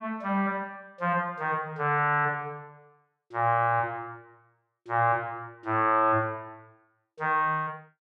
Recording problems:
none

